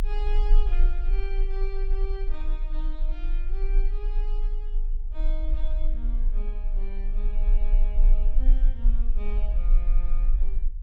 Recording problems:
rumble; below 34 Hz, strongest tone 26 Hz, SNR -15 dB

